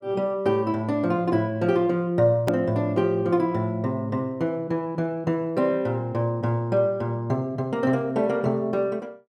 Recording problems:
click at an edit; at 2.5 s

